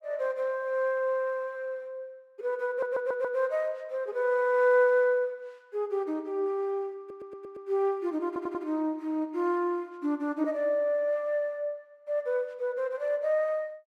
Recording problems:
stutter; at 2.5 s, at 7 s and at 8.5 s

